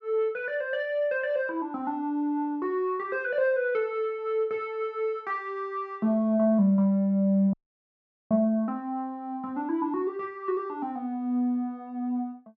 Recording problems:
audio cutting out; at 7.5 s for 1 s

